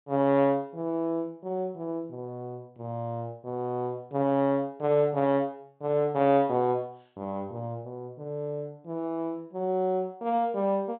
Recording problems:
treble missing; nothing above 4 kHz

